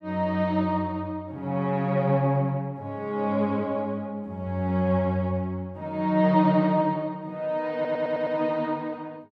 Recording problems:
stutter; at 7.5 s

